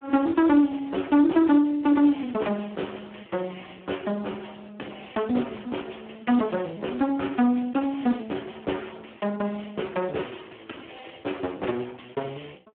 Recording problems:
telephone audio; 220 Hz to 3.3 kHz, Speex

